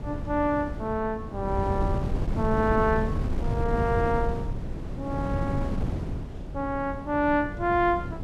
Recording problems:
wind noise; below 200 Hz, SNR 4 dB

